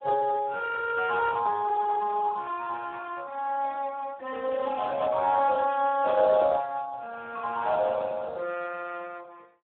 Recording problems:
telephone audio; 280 Hz to 2.3 kHz, Speex

